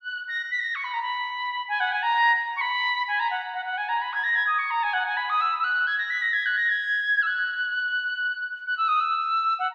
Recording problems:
none

